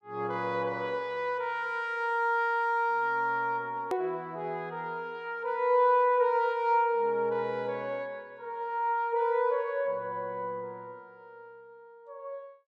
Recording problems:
click at an edit; at 4 s

